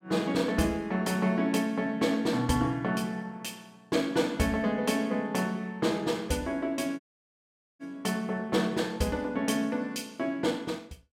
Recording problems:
audio cutting out; at 7 s for 1 s

